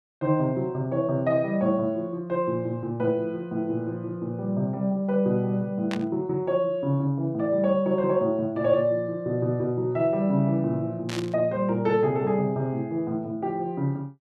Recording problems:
static burst; at 6 s and at 11 s; peak -5 dB vs average level

